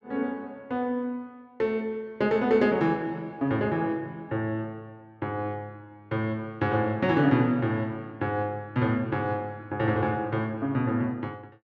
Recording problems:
none

